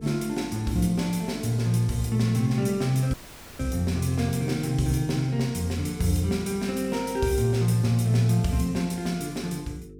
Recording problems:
hum; 50 Hz, harmonics up to 450 Hz, SNR 19 dB
dropout; at 3 s

